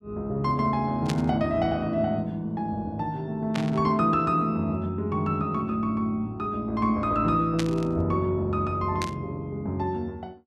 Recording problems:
static burst; 4 times, first at 1 s; peak -1 dB vs average level

